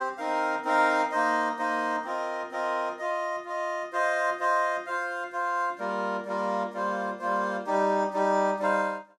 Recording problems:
none

